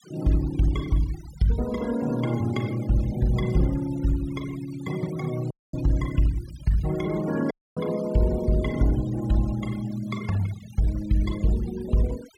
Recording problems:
denoising artefacts; signal-to-artefact ratio 18 dB
audio cutting out; at 5.5 s and at 7.5 s

